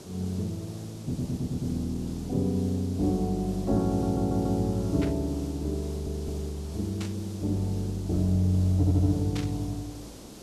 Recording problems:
background hiss; SNR 16 dB
stutter; 4 times, first at 1 s
burst of static; at 5 s, at 7 s and at 9.5 s; peak -6 dB vs average level

